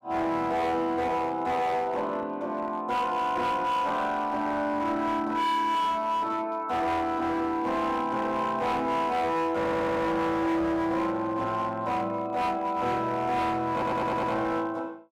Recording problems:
distorted audio; hard clipping, signal-to-distortion ratio 11 dB
audio stuttering; at 9.5 s and at 14 s

